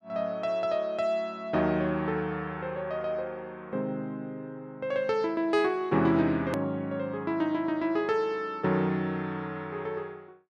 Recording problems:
edit click; at 6.5 s

